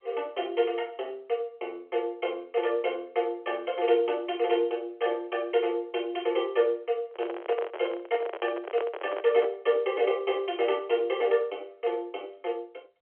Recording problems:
telephone audio; 300 Hz to 3.3 kHz, G.711
handling noise; from 7 to 9.5 s; peak -1 dB vs average level

